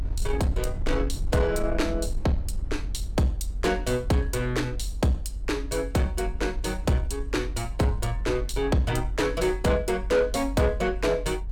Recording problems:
distorted audio; soft clipping, signal-to-distortion ratio 12 dB
rumble; below 50 Hz, strongest tone 46 Hz, SNR 7 dB

